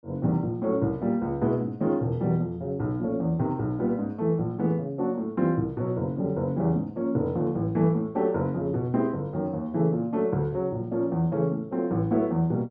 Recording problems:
none

